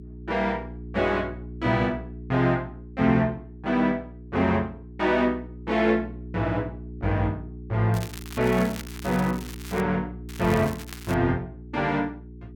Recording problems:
electrical hum; 60 Hz, harmonics up to 420 Hz, SNR 14 dB
crackle; from 8 to 10 s and at 10 s; loose cable, SNR 15 dB

